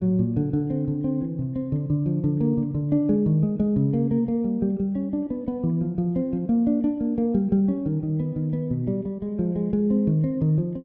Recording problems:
none

